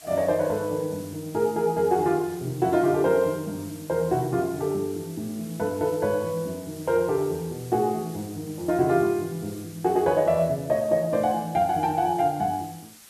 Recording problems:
hiss; slope +1 dB per octave, SNR 20 dB

